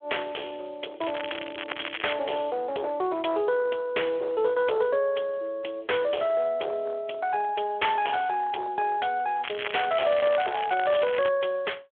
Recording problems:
phone line; 340 Hz to 3.4 kHz, Speex
distorted audio; hard clipping, uneven, signal-to-distortion ratio 10 dB
crackle; from 1 to 2 s and from 9.5 to 11 s; loose cable, SNR 8 dB

